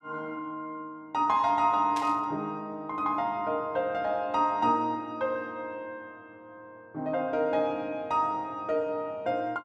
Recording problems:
static burst; at 2 s; peak -6 dB vs average level

